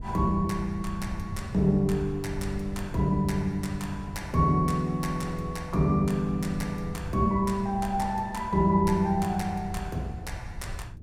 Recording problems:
wind on the microphone; below 120 Hz, SNR 12 dB

